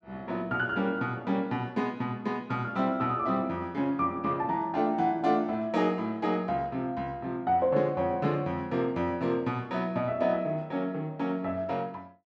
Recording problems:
none

